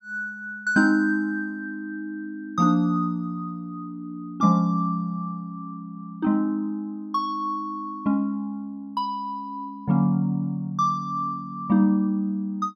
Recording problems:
none

